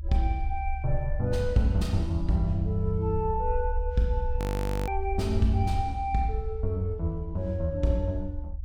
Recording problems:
rumble; below 72 Hz, SNR 5 dB
frozen audio; at 4.5 s

